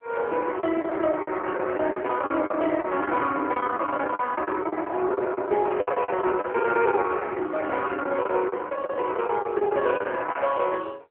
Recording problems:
phone line; 300 Hz to 3.3 kHz, AMR-NB
packet loss; 16% of the sound replaced, filled with the last packet

